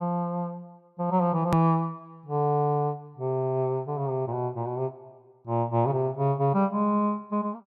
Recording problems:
hard cut with a click; at 1.5 s

